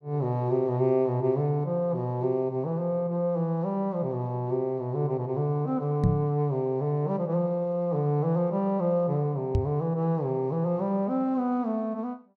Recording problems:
microphone thump; at 6 s and at 9.5 s; peak +7 dB vs average level

